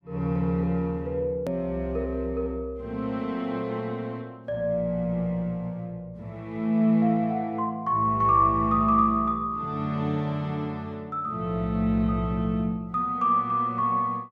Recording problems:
hard cut with a click; at 1.5 s

